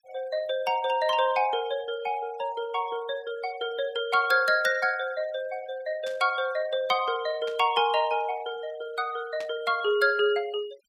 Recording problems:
noise reduction artefacts; signal-to-artefact ratio 21 dB
burst of static; at 6 s, at 7.5 s and at 9.5 s; peak -11 dB vs average level

